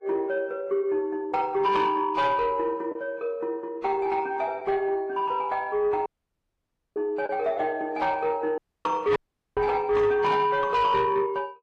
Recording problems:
codec artefacts; Vorbis, then AAC, log-spectral distance 2 dB
distortion; soft clipping, signal-to-distortion ratio 11 dB
lost packets; 1.1% of the sound replaced, filled with the last packet
dropout; at 6 s for 1 s, at 8.5 s and at 9 s
microphone thump; at 9.5 s; peak -11 dB vs average level

